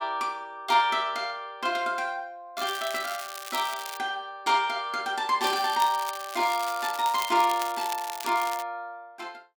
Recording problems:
crackling; from 2.5 to 4 s and from 5.5 to 8.5 s; loose cable, SNR 11 dB

